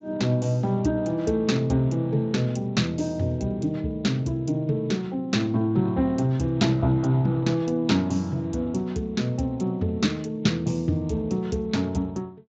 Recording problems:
lossy codec; Speex, log-spectral distance 2 dB, nothing above 7.3 kHz

